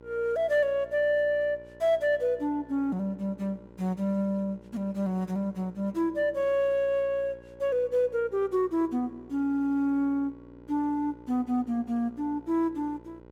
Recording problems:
hum; 60 Hz, harmonics up to 1.5 kHz, SNR 23 dB

